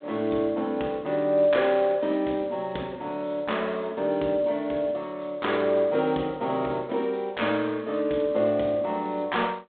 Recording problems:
phone line; 220 Hz to 3.6 kHz, G.726

